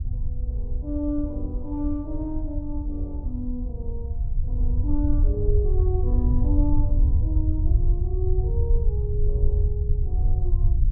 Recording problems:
rumble; below 74 Hz, SNR -7 dB

